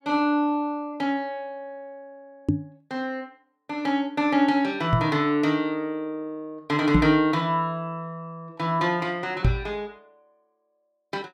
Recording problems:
microphone bump; 4 times, first at 2.5 s; peak +7 dB vs average level

